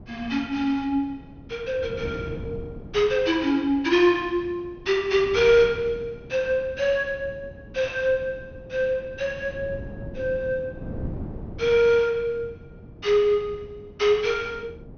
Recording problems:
treble missing; nothing above 6.4 kHz
wind on the microphone; below 280 Hz, SNR 17 dB

